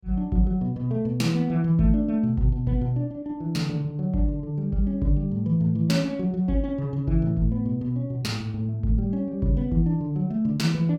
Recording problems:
none

